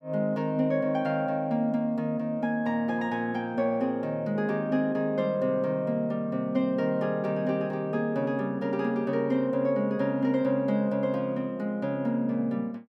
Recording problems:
none

